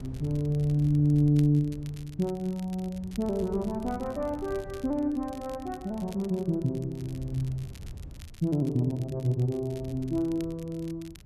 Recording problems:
wind noise; below 120 Hz, SNR 17 dB
crackle; vinyl, SNR 25 dB

